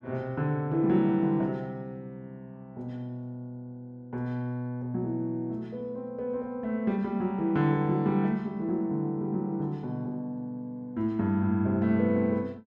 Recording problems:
none

